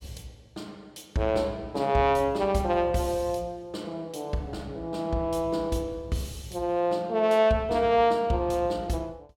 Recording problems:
none

